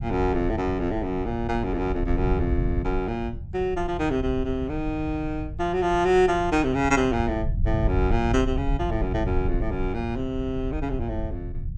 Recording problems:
rumble; below 96 Hz, SNR 6 dB

